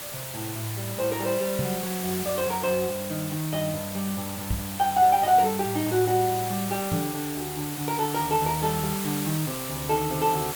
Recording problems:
hiss; slope -1 dB per octave, SNR 6 dB
microphone thump; at 1.5 s, at 4.5 s and at 7 s; peak +3 dB vs average level

